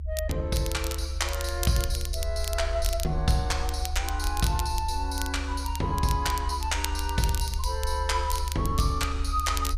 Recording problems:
low-frequency rumble; below 72 Hz, strongest tone 70 Hz, SNR 3 dB
crackle; vinyl, SNR 9 dB

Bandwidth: 14.5 kHz